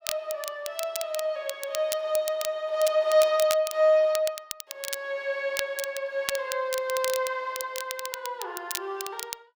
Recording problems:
crackling; vinyl, SNR 9 dB

